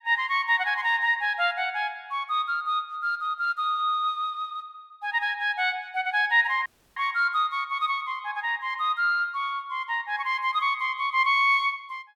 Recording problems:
dropout; at 6.5 s

